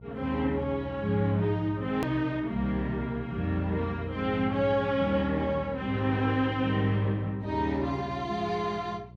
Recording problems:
hum; 60 Hz, harmonics up to 540 Hz, SNR 17 dB
edit click; at 2 s

